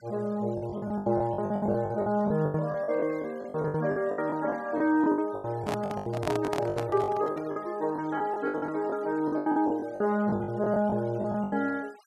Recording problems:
denoising artefacts; signal-to-artefact ratio 25 dB
packet loss; 19% of the sound replaced, filled with the last packet
handling noise; from 5.5 to 7.5 s; peak +1 dB vs average level

